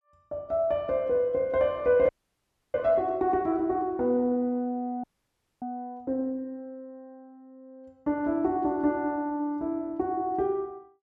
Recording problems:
frozen audio; at 2 s for 0.5 s and at 5 s for 0.5 s

